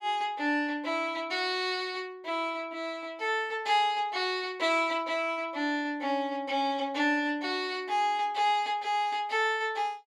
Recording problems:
none

